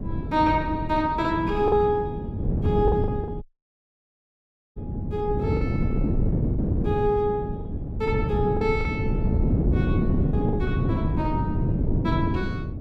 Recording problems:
wind noise; below 230 Hz, SNR 0 dB
lost packets; 4% of the sound replaced, filled with the last packet
dropout; at 3.5 s for 1.5 s

